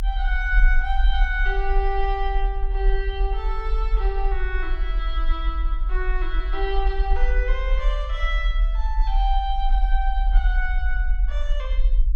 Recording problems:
low-frequency rumble; below 44 Hz, SNR -4 dB

